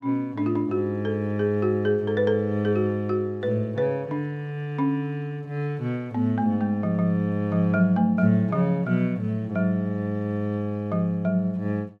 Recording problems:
none

